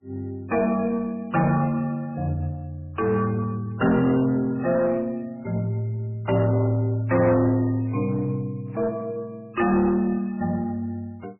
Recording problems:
codec artefacts; MP3, then MP3, log-spectral distance 2 dB, nothing above 2.7 kHz
distortion; soft clipping, signal-to-distortion ratio 10 dB

